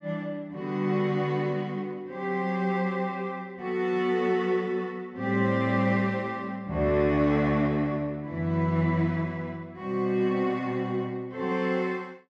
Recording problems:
none

